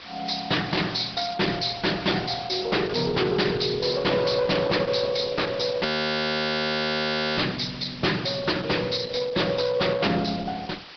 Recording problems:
low-pass filter; nothing above 5.2 kHz
lossy compression; Opus, log-spectral distance 16 dB
distortion; hard clipping, signal-to-distortion ratio 8 dB
background hiss; SNR 16 dB
frozen audio; at 6 s for 1.5 s

